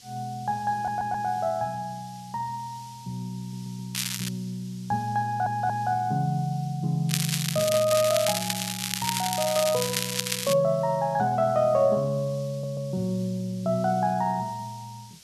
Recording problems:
hiss; SNR 22 dB
stutter; 4 times, first at 1 s
crackling; at 4 s and from 7 to 11 s; loose cable, SNR 2 dB

